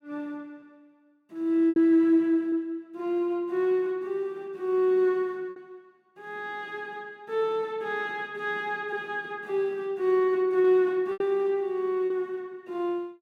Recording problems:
lost packets; 3% of the sound replaced, filled with repeated pitch periods

